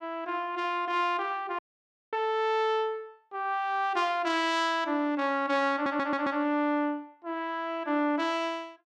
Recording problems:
audio cutting out; at 1.5 s for 0.5 s
stutter; at 5.5 s

